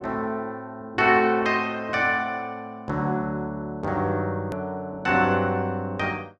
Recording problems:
click at an edit; at 4.5 s

